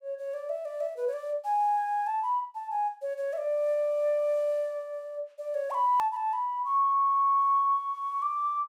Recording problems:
hard cut with a click; at 6 s

